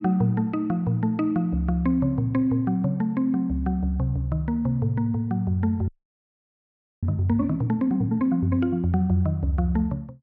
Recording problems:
audio freezing; at 6 s for 1 s

